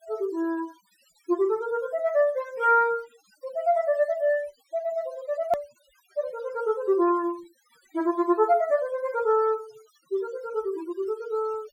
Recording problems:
noise reduction artefacts; signal-to-artefact ratio 25 dB
click at an edit; at 5.5 s

